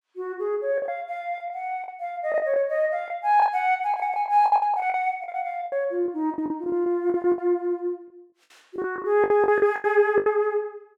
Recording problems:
packet loss; 14% of the sound replaced, filled with the last packet

